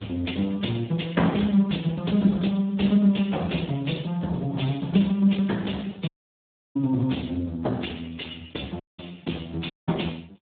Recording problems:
phone line; 170 Hz to 3.7 kHz, Speex
audio cutting out; at 6 s for 0.5 s, at 9 s and at 9.5 s

